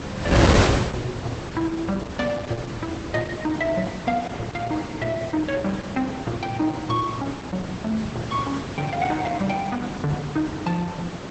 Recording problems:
lossy codec; Opus, log-spectral distance 4 dB, nothing above 8 kHz
wind on the microphone; below 1.1 kHz, SNR 1 dB

